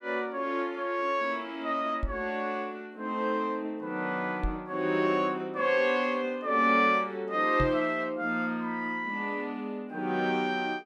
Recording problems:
microphone bump; at 2 s, at 4.5 s and at 7.5 s; peak +1 dB vs average level

